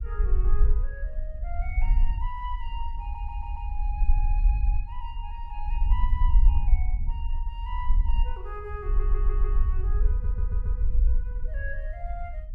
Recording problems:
rumble; below 48 Hz, SNR -13 dB
stutter; 4 times, first at 3 s

